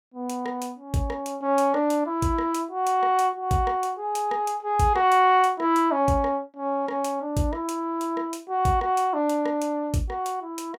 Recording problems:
none

